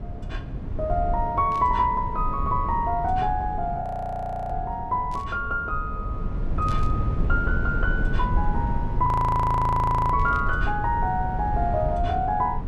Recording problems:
rumble; below 110 Hz, SNR 4 dB
static burst; 4 times, first at 1.5 s; peak -14 dB vs average level
frozen audio; at 4 s for 0.5 s and at 9 s for 1 s

